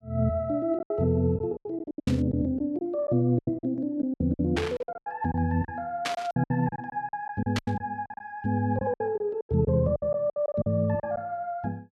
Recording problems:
packet loss; 15% of the sound replaced, filled with silence
static burst; 4 times, first at 2 s; peak +2 dB vs average level

